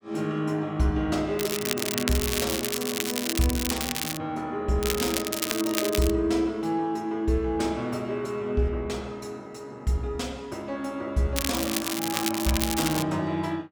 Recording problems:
crackle; from 1.5 to 4 s, from 5 to 6 s and from 11 to 13 s; loose cable, SNR 1 dB

